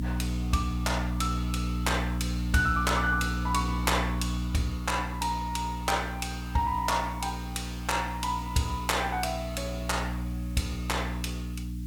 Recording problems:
electrical hum; 60 Hz, harmonics up to 300 Hz, SNR 3 dB
background hiss; slope +2 dB per octave, SNR 23 dB

